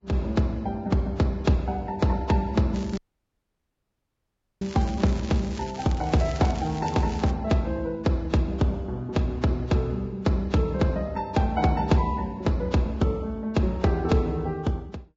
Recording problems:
lossy codec; Vorbis, log-spectral distance 2 dB, nothing above 16.6 kHz
crackling; from 2.5 to 7.5 s; loose cable, SNR 18 dB
dropout; at 3 s for 1.5 s

